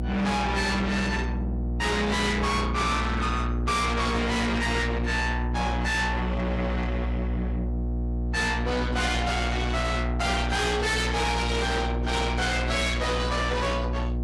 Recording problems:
lossy codec; AAC, log-spectral distance 2 dB, nothing above 11.3 kHz
distortion; soft clipping, signal-to-distortion ratio 6 dB
hum; 60 Hz, harmonics up to 780 Hz, SNR 2 dB

